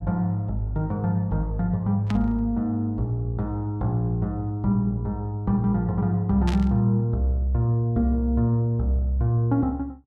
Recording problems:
static burst; at 2 s and at 6.5 s; peak -6 dB vs average level

